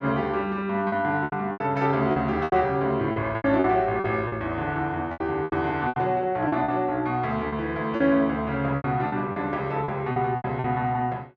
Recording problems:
lost packets; 12% of the sound replaced, filled with repeated pitch periods

